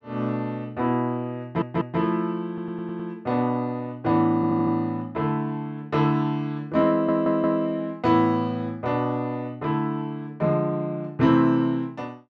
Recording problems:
stutter; 4 times, first at 1.5 s

